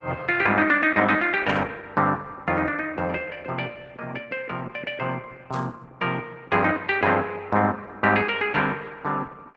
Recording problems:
lossy compression; Opus, log-spectral distance 3 dB
static burst; at 1.5 s and at 5.5 s; peak -14 dB vs average level

